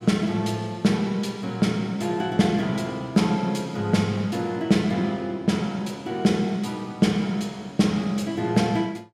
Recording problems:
none

